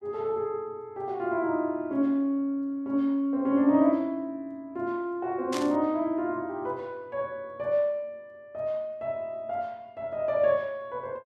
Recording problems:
static burst; at 5.5 s; peak -3 dB vs average level

